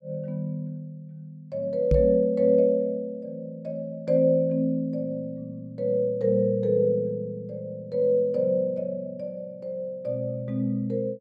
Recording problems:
microphone thump; at 2 s; peak +6 dB vs average level

